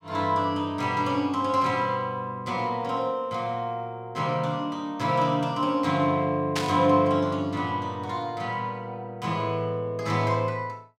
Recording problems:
burst of static; at 6.5 s; peak +1 dB vs average level

